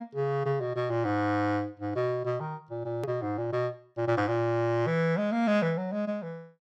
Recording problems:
edit click; at 3 s

